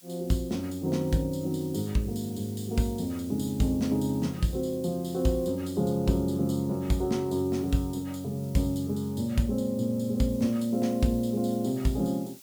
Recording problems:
hiss; slope +3 dB per octave, SNR 21 dB

